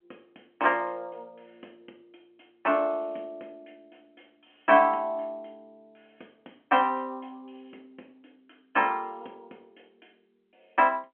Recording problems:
phone line; 220 Hz to 3.3 kHz, G.711

